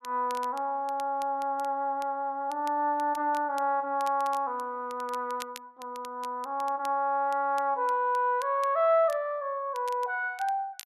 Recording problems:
crackle; vinyl, SNR 22 dB

